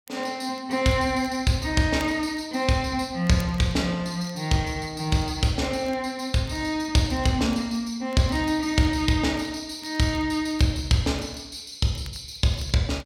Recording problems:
crackling; vinyl, SNR 28 dB

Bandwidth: 16 kHz